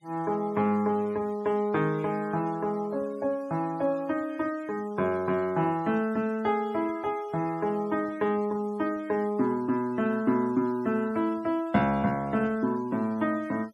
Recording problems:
noise reduction artefacts; signal-to-artefact ratio 25 dB

